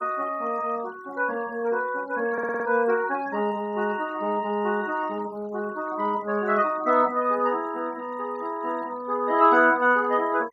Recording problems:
denoising artefacts; signal-to-artefact ratio 24 dB
stutter; at 2.5 s

